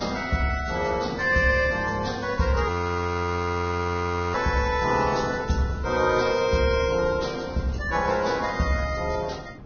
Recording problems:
lossy compression; Vorbis, log-spectral distance 4 dB, nothing above 6.3 kHz
wind noise; below 350 Hz, SNR 16 dB
audio freezing; at 2.5 s for 1.5 s

